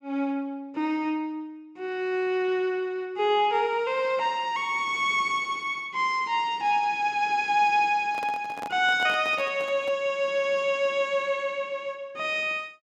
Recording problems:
handling noise; from 8 to 10 s; peak -8 dB vs average level

